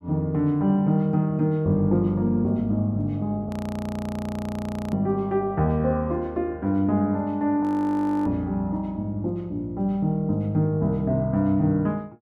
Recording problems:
audio freezing; at 3.5 s for 1.5 s and at 7.5 s for 0.5 s

